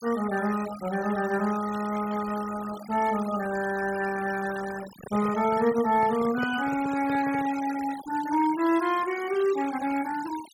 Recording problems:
denoising artefacts; signal-to-artefact ratio 15 dB
handling noise; from 5 to 7.5 s; peak -4 dB vs average level

